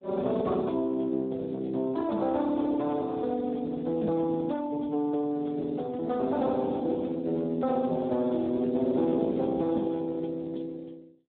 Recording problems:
telephone audio; 220 Hz to 3.7 kHz, Speex

